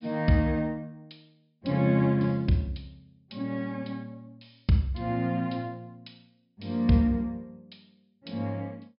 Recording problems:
low-pass filter; nothing above 5.5 kHz

